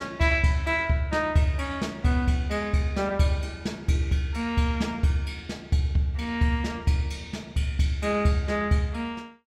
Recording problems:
none

